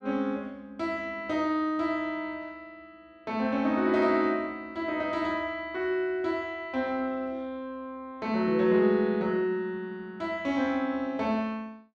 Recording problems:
none

